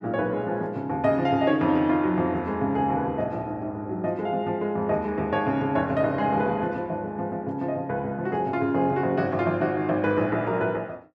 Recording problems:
none

